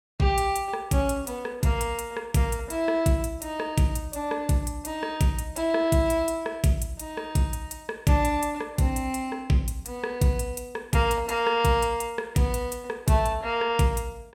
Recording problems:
none

